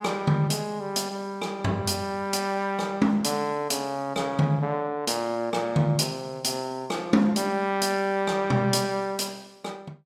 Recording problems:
none

